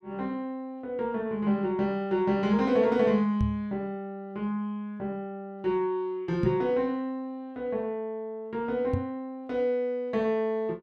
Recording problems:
knock on the microphone; at 3.5 s, at 6.5 s and at 9 s; peak +4 dB vs average level

